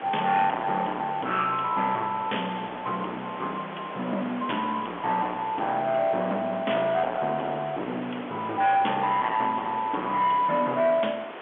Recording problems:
telephone audio; 300 Hz to 3.2 kHz, G.711
distorted audio; soft clipping, signal-to-distortion ratio 8 dB
hiss; SNR 11 dB

